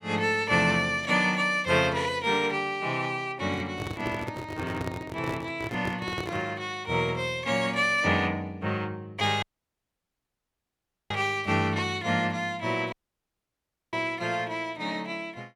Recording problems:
microphone handling noise; from 3.5 to 6.5 s; peak -2 dB vs average level
dropout; at 9.5 s for 1.5 s and at 13 s for 1 s

